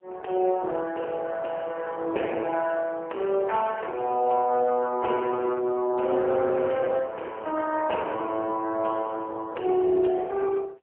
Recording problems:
telephone audio; 280 Hz to 3.4 kHz, AMR-NB, then MP3

